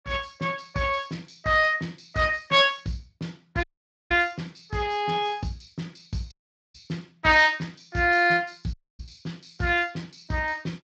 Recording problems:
lossy codec; Speex, log-spectral distance 5 dB
dropout; at 3.5 s, at 6.5 s and at 8.5 s

